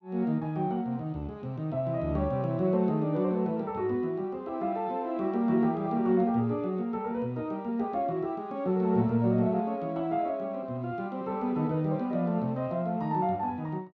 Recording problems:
none

